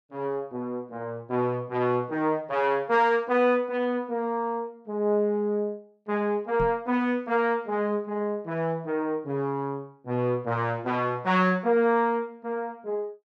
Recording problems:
microphone bump; at 6.5 s; peak -4 dB vs average level

